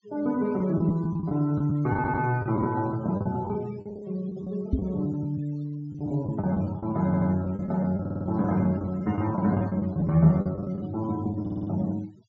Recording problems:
treble cut off; nothing above 8 kHz
denoising artefacts; signal-to-artefact ratio 23 dB
lost packets; 11% of the sound replaced, filled with the last packet
audio stuttering; 4 times, first at 2 s
microphone bump; at 4.5 s; peak +6 dB vs average level

